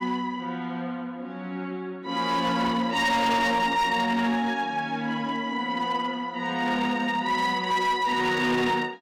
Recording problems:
distortion; hard clipping, signal-to-distortion ratio 11 dB

